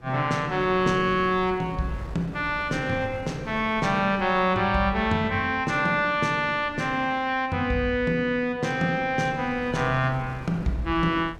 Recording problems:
wind noise; below 450 Hz, SNR 19 dB

